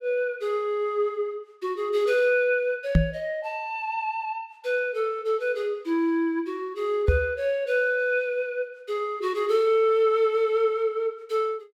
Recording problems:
knock on the microphone; at 3 s and at 7 s; peak +9 dB vs average level

